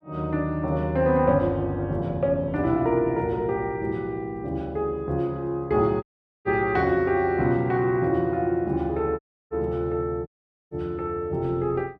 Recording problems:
audio cutting out; at 6 s, at 9 s and at 10 s

